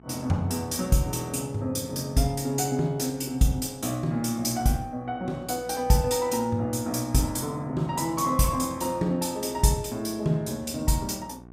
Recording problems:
hum; 60 Hz, harmonics up to 1.5 kHz, SNR 23 dB

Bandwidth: 15.5 kHz